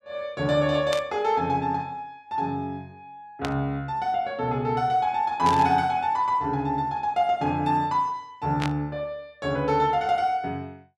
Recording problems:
burst of static; 4 times, first at 1 s; peak -2 dB vs average level

